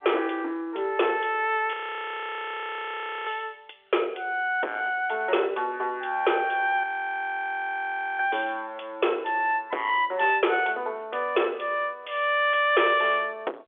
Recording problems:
phone line; 320 Hz to 3.5 kHz, G.711
distortion; soft clipping, signal-to-distortion ratio 6 dB
audio freezing; at 1.5 s for 1.5 s and at 7 s for 1.5 s

